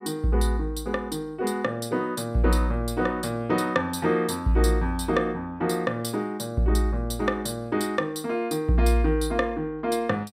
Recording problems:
none

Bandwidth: 15.5 kHz